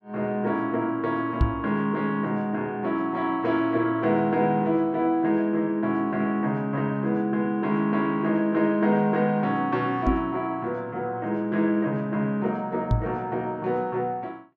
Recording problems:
knock on the microphone; at 1.5 s, at 10 s and at 13 s; peak +6 dB vs average level

